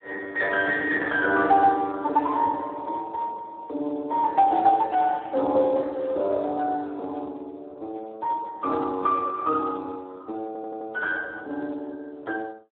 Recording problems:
phone line; 280 Hz to 2.3 kHz, Speex
stutter; at 10 s

